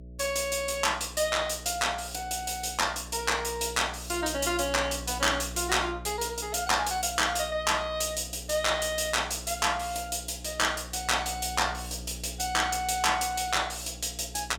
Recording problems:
hum; 60 Hz, harmonics up to 660 Hz, SNR 16 dB

